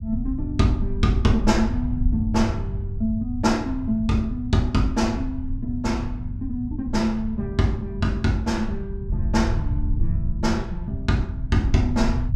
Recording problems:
low-frequency rumble; below 92 Hz, SNR 5 dB

